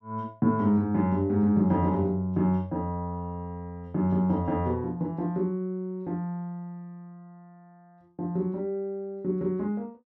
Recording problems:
none

